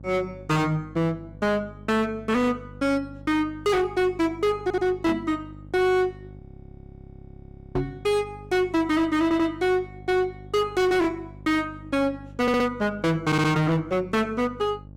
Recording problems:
distorted audio; hard clipping, signal-to-distortion ratio 6 dB
electrical hum; 50 Hz, harmonics up to 600 Hz, SNR 19 dB
audio stuttering; 4 times, first at 4.5 s
knock on the microphone; at 5 s and at 8 s; peak +1 dB vs average level
frozen audio; at 6.5 s for 1.5 s

